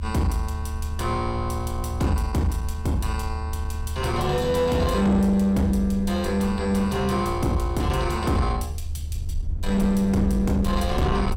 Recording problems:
distortion; soft clipping, signal-to-distortion ratio 10 dB
low-frequency rumble; below 78 Hz, strongest tone 76 Hz, SNR 7 dB

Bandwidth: 17.5 kHz